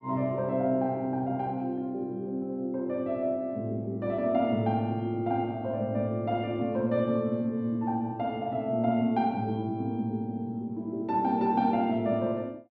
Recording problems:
none

